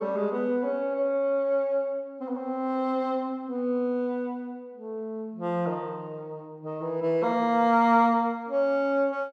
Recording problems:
none

